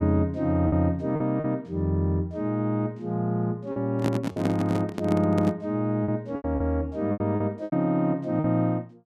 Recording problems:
lost packets; 7% of the sound replaced, filled with repeated pitch periods
microphone handling noise; from 4 to 5.5 s; peak +2 dB vs average level

